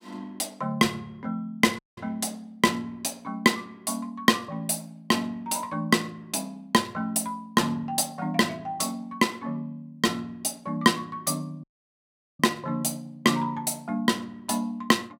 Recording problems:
dropout; at 2 s and at 12 s for 1 s

